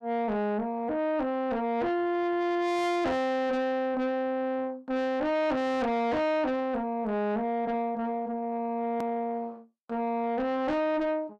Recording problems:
distorted audio; soft clipping, signal-to-distortion ratio 5 dB
hard cut with a click; at 9 s

